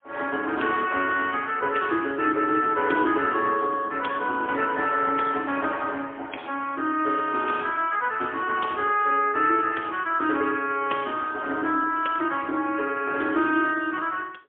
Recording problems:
phone line; 240 Hz to 3.4 kHz, AMR-NB, then MP3

